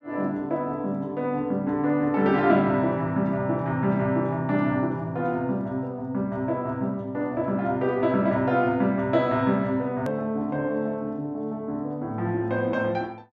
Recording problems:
click at an edit; at 10 s

